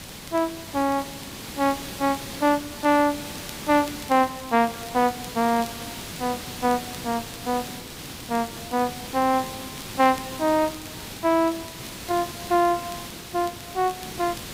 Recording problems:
hiss; SNR 10 dB
crackle; vinyl, SNR 24 dB

